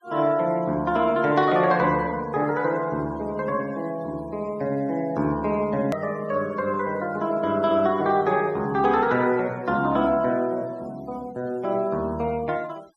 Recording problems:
denoising artefacts; signal-to-artefact ratio 26 dB
edit click; at 6 s

